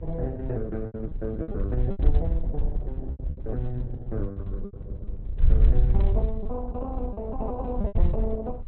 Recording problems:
lossy codec; Opus, log-spectral distance 2 dB
electrical hum; 60 Hz, harmonics up to 540 Hz, SNR 22 dB
wind on the microphone; below 64 Hz, SNR -5 dB
lost packets; 9% of the sound replaced, filled with repeated pitch periods

